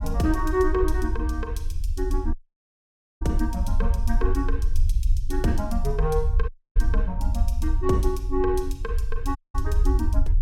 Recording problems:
low-frequency rumble; below 60 Hz, SNR -1 dB
audio cutting out; at 2.5 s for 1 s, at 6.5 s and at 9.5 s

